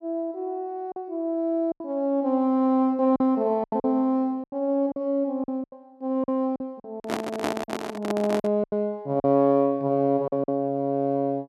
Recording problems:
packet loss; 9% of the sound replaced, filled with silence
handling noise; from 7 to 8.5 s; peak +2 dB vs average level

